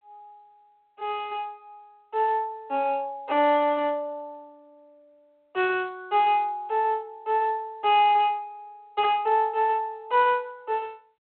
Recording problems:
phone line; 280 Hz to 3.3 kHz, G.726

